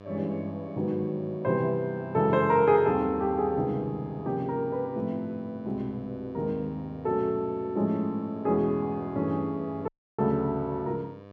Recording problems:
hum; 50 Hz, harmonics up to 2.4 kHz, SNR 20 dB
dropout; at 10 s

